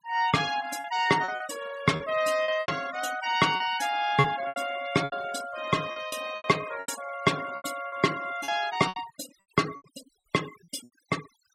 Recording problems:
noise reduction artefacts; signal-to-artefact ratio 15 dB
packet loss; 11% of the sound replaced, filled with repeated pitch periods

